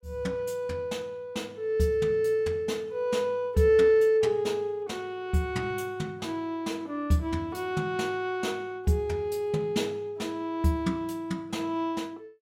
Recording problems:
none

